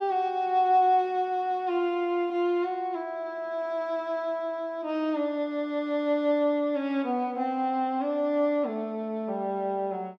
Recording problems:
none

